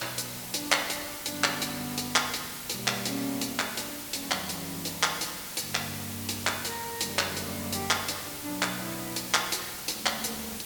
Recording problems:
hiss; slope -1 dB per octave, SNR 7 dB

